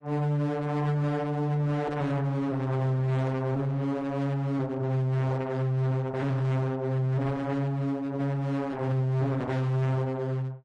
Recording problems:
lossy compression; AAC, then AAC, log-spectral distance 2 dB, nothing above 10.4 kHz
distorted audio; hard clipping, uneven, signal-to-distortion ratio 6 dB

